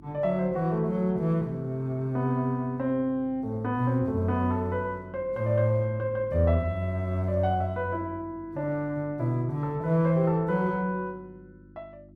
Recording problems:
electrical hum; 50 Hz, harmonics up to 350 Hz, SNR 23 dB

